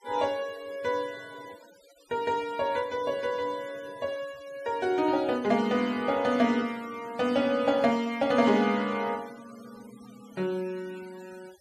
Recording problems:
noise reduction artefacts; signal-to-artefact ratio 23 dB

